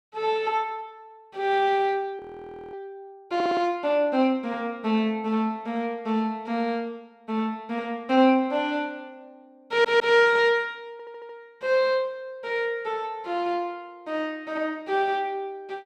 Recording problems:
frozen audio; at 2 s for 0.5 s
stutter; at 3.5 s, at 9.5 s and at 11 s

